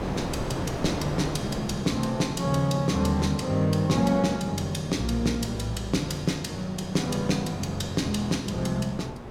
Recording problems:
electrical hum; 60 Hz, harmonics up to 1.2 kHz, SNR 19 dB
wind noise; below 740 Hz, SNR 10 dB

